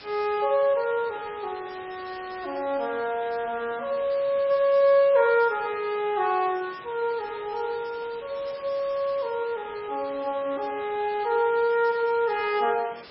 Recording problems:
lossy compression; MP3, log-spectral distance 11 dB, nothing above 4.6 kHz
hiss; SNR 19 dB

